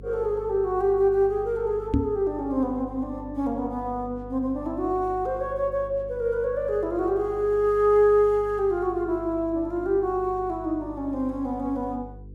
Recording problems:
hum; 50 Hz, harmonics up to 500 Hz, SNR 18 dB
microphone thump; at 2 s; peak +5 dB vs average level

